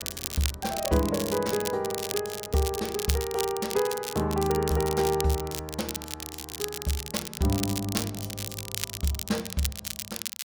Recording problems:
crackling; vinyl, SNR 5 dB

